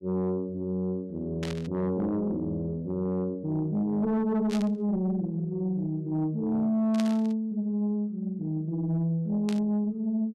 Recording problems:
distorted audio; soft clipping, signal-to-distortion ratio 11 dB
burst of static; 4 times, first at 1.5 s; peak -5 dB vs average level

